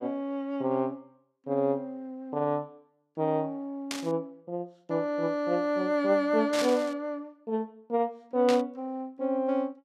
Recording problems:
burst of static; at 4 s, at 6.5 s and at 8.5 s; peak 0 dB vs average level

